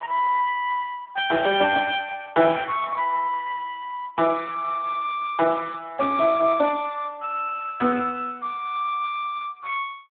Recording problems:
phone line; 190 Hz to 3.5 kHz, Speex

